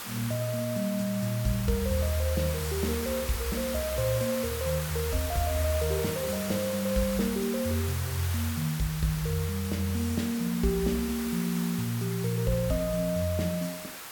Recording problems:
background hiss; SNR 7 dB

